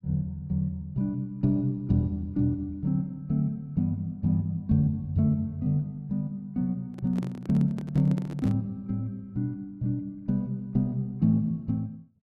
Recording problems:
microphone handling noise; from 7 to 8.5 s; peak -6 dB vs average level

